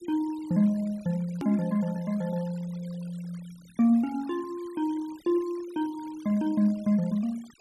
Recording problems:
noise reduction artefacts; signal-to-artefact ratio 24 dB
click at an edit; at 1.5 s

